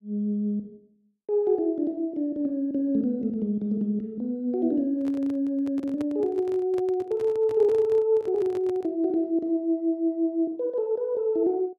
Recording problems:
microphone handling noise; from 5 to 9 s; peak -9 dB vs average level

